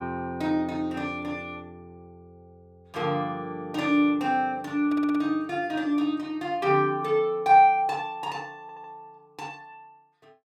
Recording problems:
stutter; at 5 s and at 8.5 s

